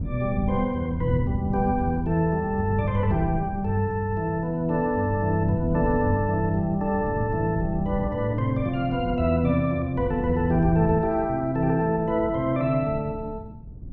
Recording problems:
wind on the microphone; below 160 Hz, SNR 10 dB

